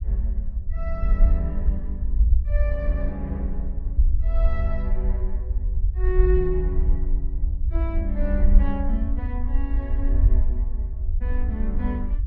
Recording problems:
low-frequency rumble; below 58 Hz, SNR -7 dB

